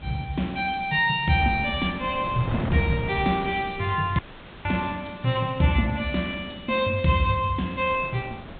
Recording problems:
treble cut off; nothing above 4 kHz
hiss; SNR 27 dB
wind on the microphone; below 630 Hz, SNR 14 dB
audio cutting out; at 4 s

